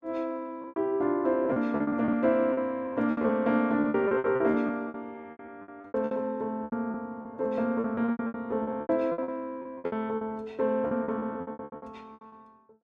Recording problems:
lost packets; 21% of the sound replaced, filled with repeated pitch periods

